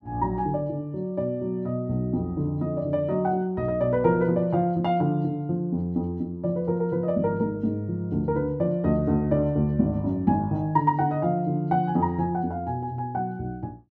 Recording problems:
none

